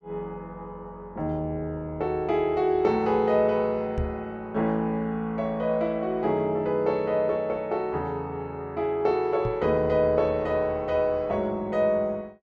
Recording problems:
microphone thump; at 4 s and at 9.5 s; peak -1 dB vs average level

